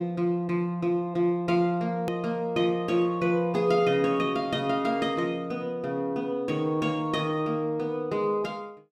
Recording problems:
click at an edit; at 2 s

